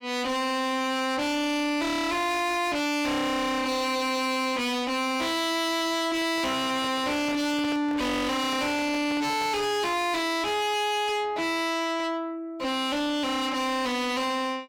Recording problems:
distortion; soft clipping, signal-to-distortion ratio 6 dB
microphone handling noise; from 6 to 9.5 s; peak -4 dB vs average level

